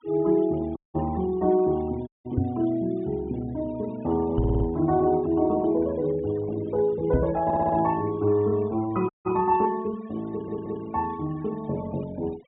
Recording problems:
treble missing; nothing above 4 kHz
noise reduction artefacts; signal-to-artefact ratio 23 dB
dropout; at 1 s, at 2 s and at 9 s
microphone thump; at 2.5 s, at 4.5 s and at 7 s; peak +5 dB vs average level
stutter; at 4.5 s, at 7.5 s and at 10 s

